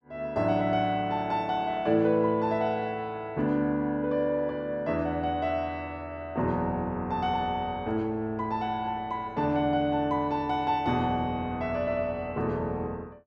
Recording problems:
none

